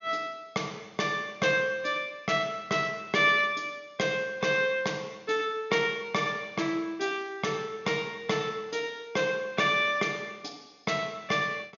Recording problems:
low-pass filter; nothing above 6.8 kHz

